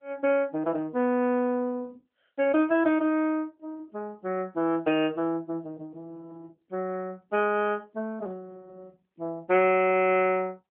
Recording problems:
phone line; 220 Hz to 3.2 kHz, AMR-NB

